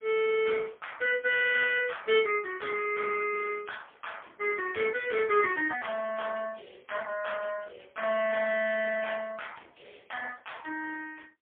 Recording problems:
telephone audio; 320 Hz to 3.4 kHz, AMR-NB, then MP3

